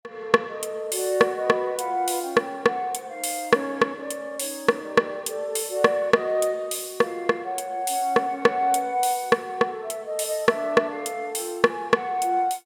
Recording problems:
none

